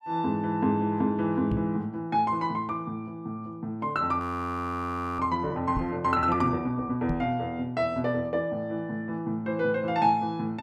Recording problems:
microphone bump; at 1.5 s, at 6 s and at 7 s; peak +1 dB vs average level
frozen audio; at 4 s for 1 s

